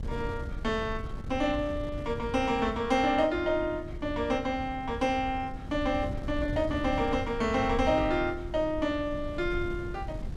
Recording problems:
wind on the microphone; below 140 Hz, SNR 10 dB

